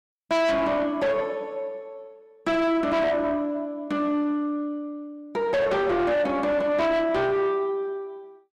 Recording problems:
distorted audio; soft clipping, signal-to-distortion ratio 6 dB

